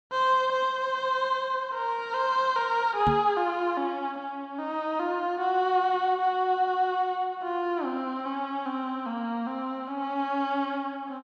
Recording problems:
knock on the microphone; at 3 s; peak +2 dB vs average level

